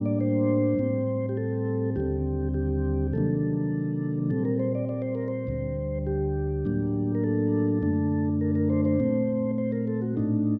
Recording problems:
none

